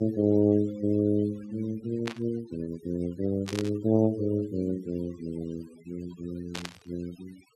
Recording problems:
noise reduction artefacts; signal-to-artefact ratio 21 dB
static burst; at 2 s, at 3.5 s and at 6.5 s; peak -2 dB vs average level

